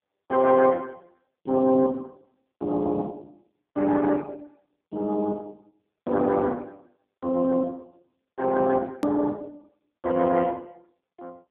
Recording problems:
telephone audio; 220 Hz to 3 kHz, AMR-NB
hard cut with a click; at 9 s

